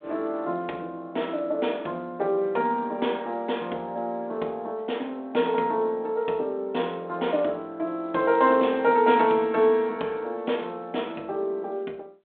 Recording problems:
telephone audio; 280 Hz to 3.5 kHz, G.726

